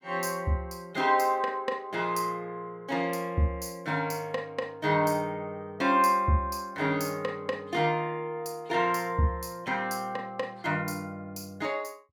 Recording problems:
none

